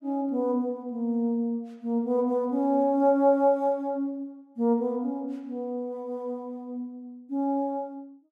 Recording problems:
none

